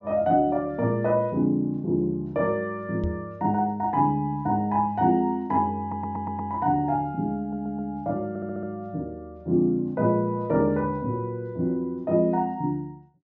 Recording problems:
treble missing; nothing above 8 kHz
microphone thump; at 3 s; peak 0 dB vs average level
stutter; at 6 s, at 7.5 s and at 8.5 s

